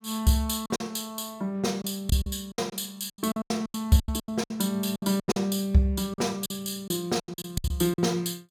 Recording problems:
packet loss; 15% of the sound replaced, filled with silence

